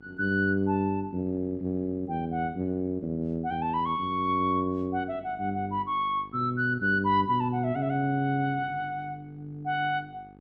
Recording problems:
electrical hum; 50 Hz, harmonics up to 1.3 kHz, SNR 22 dB

